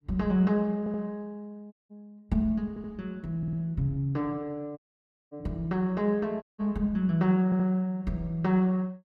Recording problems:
audio stuttering; 4 times, first at 1 s
dropout; at 1.5 s, at 5 s for 0.5 s and at 6.5 s

